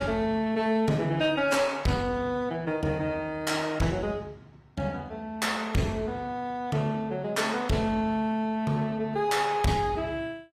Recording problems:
lossy compression; AAC, log-spectral distance 2 dB
distorted audio; soft clipping, signal-to-distortion ratio 10 dB

